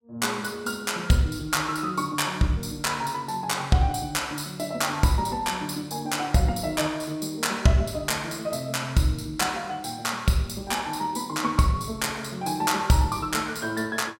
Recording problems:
none

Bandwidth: 16.5 kHz